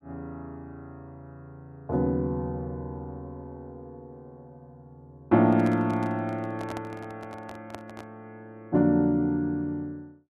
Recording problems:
handling noise; from 5.5 to 8 s; peak -8 dB vs average level

